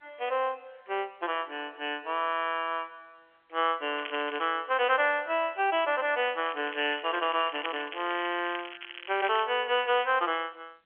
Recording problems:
telephone audio; 320 Hz to 3.3 kHz, G.711
crackle; at 4 s and from 6.5 to 9.5 s; loose cable, SNR 13 dB

